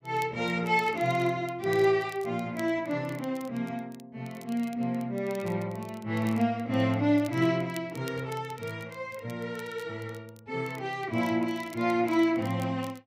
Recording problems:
crackle; vinyl, SNR 23 dB

